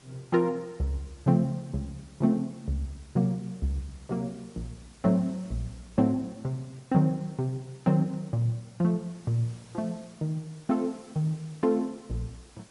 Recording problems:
lossy codec; MP3, log-spectral distance 4 dB, nothing above 13.1 kHz
background hiss; slope -3 dB per octave, SNR 25 dB

